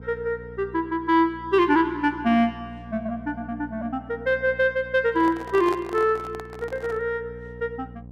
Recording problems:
hum; 60 Hz, harmonics up to 780 Hz, SNR 19 dB
microphone handling noise; from 5 to 7 s; peak -6 dB vs average level

